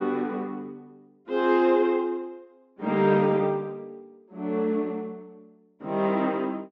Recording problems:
treble missing; nothing above 8 kHz

